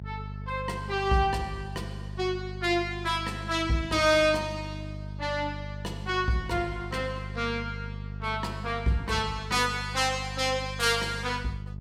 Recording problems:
electrical hum; 50 Hz, harmonics up to 400 Hz, SNR 10 dB

